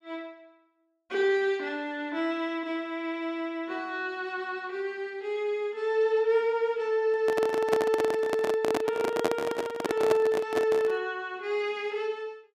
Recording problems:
microphone handling noise; from 7 to 11 s; peak +4 dB vs average level

